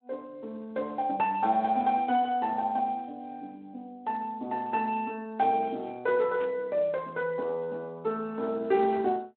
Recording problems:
telephone audio; 220 Hz to 3.2 kHz, Speex
static burst; at 6.5 s; peak -14 dB vs average level

